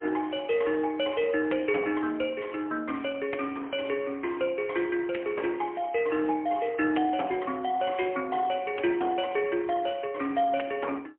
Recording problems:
telephone audio; 240 Hz to 3.2 kHz, AMR-NB, then MP3

